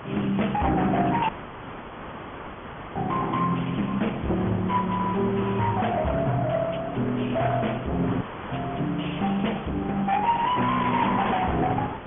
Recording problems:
treble cut off; nothing above 3.4 kHz
lossy codec; Opus, log-spectral distance 6 dB
distortion; soft clipping, signal-to-distortion ratio 7 dB
background hiss; SNR 12 dB
audio cutting out; at 1.5 s for 1.5 s and at 8 s

